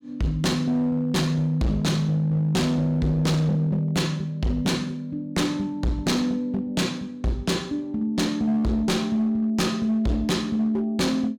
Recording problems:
distorted audio; hard clipping, signal-to-distortion ratio 8 dB

